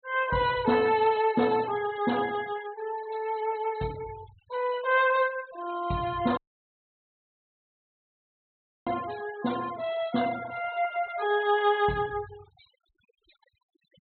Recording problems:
treble missing; nothing above 4 kHz
noise reduction artefacts; signal-to-artefact ratio 18 dB
dropout; at 6.5 s for 2.5 s

